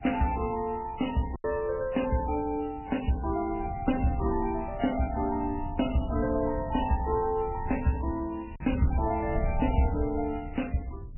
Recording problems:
lossy codec; MP3, then MP3, log-spectral distance 6 dB, nothing above 2.9 kHz
wind on the microphone; below 100 Hz, SNR 10 dB
packet loss; 1.1% of the sound replaced, filled with silence

